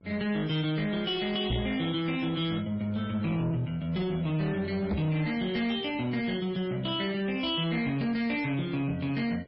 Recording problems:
codec artefacts; MP3, log-spectral distance 3 dB, nothing above 4.9 kHz
distortion; soft clipping, signal-to-distortion ratio 11 dB
hum; 50 Hz, harmonics up to 1.1 kHz, SNR 26 dB
microphone thump; at 1.5 s and at 5 s; peak +5 dB vs average level

